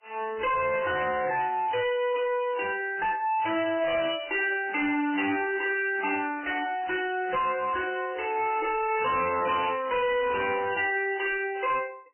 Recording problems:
codec artefacts; MP3, then MP3, log-spectral distance 6 dB, nothing above 2.7 kHz
distortion; hard clipping, signal-to-distortion ratio 6 dB

